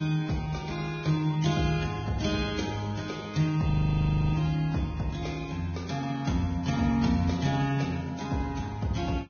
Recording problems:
lossy compression; Vorbis, log-spectral distance 3 dB, nothing above 6.5 kHz
audio freezing; at 3.5 s for 0.5 s

